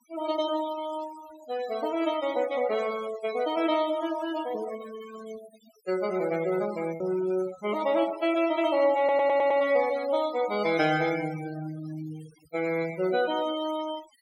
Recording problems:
noise reduction artefacts; signal-to-artefact ratio 16 dB
lost packets; 0.3% of the sound replaced, filled with repeated pitch periods
audio stuttering; at 9 s

